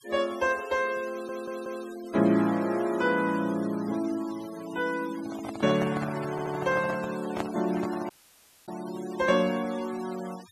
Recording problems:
denoising artefacts; signal-to-artefact ratio 18 dB
audio stuttering; at 1 s and at 6.5 s
handling noise; from 5 to 9 s; peak 0 dB vs average level
audio cutting out; at 8 s for 0.5 s

